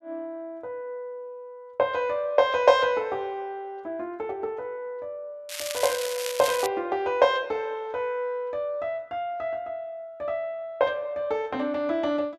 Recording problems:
crackling; from 5.5 to 6.5 s; loose cable, SNR 5 dB

